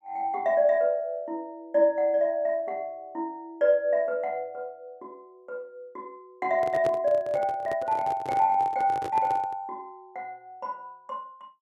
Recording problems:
microphone handling noise; from 6.5 to 9.5 s; peak -4 dB vs average level

